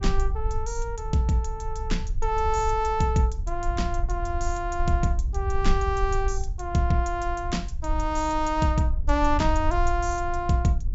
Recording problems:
low-pass filter; nothing above 8 kHz
rumble; below 58 Hz, SNR 5 dB

